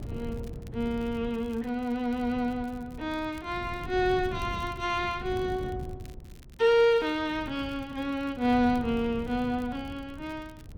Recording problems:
wind noise; below 180 Hz, SNR 13 dB
crackle; vinyl, SNR 29 dB

